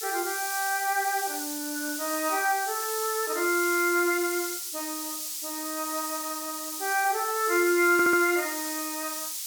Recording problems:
background hiss; slope +8 dB per octave, SNR 5 dB
stutter; at 8 s

